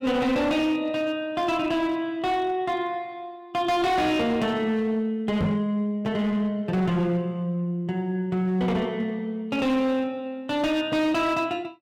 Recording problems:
distortion; hard clipping, signal-to-distortion ratio 10 dB
knock on the microphone; at 5.5 s; peak +4 dB vs average level

